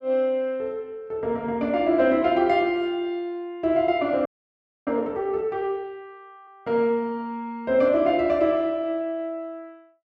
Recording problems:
audio freezing; at 4.5 s for 0.5 s

